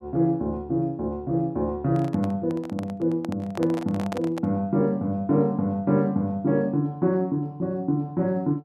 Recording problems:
handling noise; from 2 to 4.5 s; peak -4 dB vs average level

